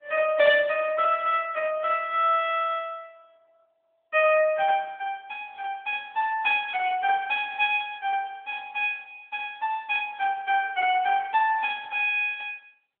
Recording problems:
telephone audio; 240 Hz to 3.7 kHz, AMR-NB

